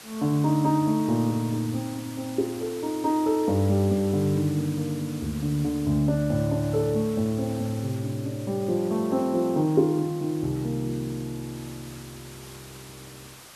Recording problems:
background hiss; slope -1 dB per octave, SNR 18 dB

